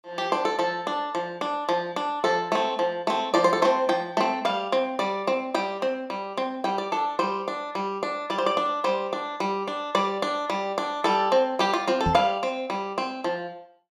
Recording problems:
microphone thump; at 12 s; peak +2 dB vs average level

